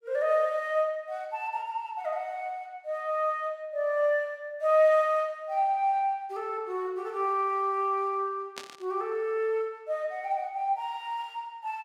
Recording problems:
static burst; at 8.5 s; peak -5 dB vs average level

